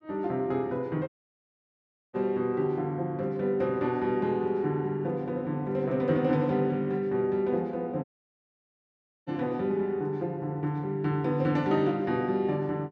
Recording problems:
audio cutting out; at 1 s for 1 s and at 8 s for 1 s

